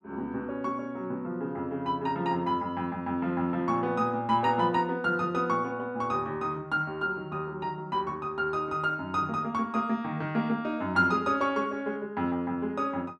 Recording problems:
none

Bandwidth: 12 kHz